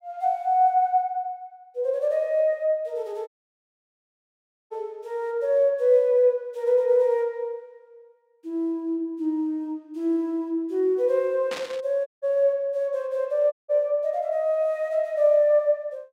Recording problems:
audio cutting out; at 3.5 s for 1.5 s, at 12 s and at 14 s
static burst; at 12 s; peak -7 dB vs average level

